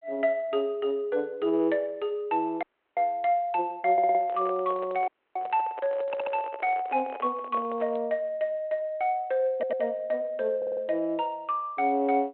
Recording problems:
telephone audio; 260 Hz to 3.3 kHz, G.726
dropout; at 2.5 s and at 5 s
audio stuttering; 4 times, first at 4 s
microphone handling noise; from 4 to 8 s; peak -8 dB vs average level

